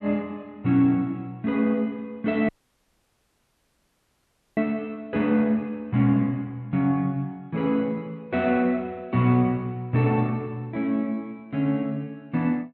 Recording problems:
dropout; at 2.5 s for 2 s

